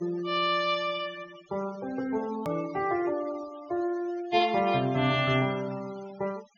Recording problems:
treble missing; nothing above 6.8 kHz
noise reduction artefacts; signal-to-artefact ratio 19 dB
hard cut with a click; at 2.5 s

